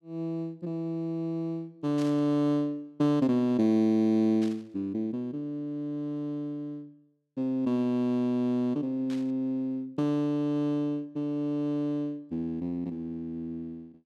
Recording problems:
static burst; at 2 s, at 4.5 s and at 9 s; peak -12 dB vs average level

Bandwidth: 14 kHz